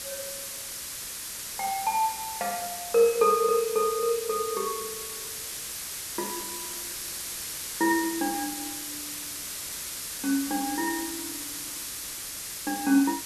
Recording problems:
hiss; slope +1 dB per octave, SNR 6 dB

